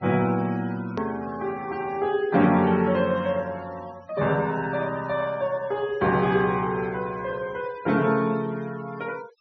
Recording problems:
treble missing; nothing above 6.1 kHz
denoising artefacts; signal-to-artefact ratio 21 dB
edit click; at 1 s

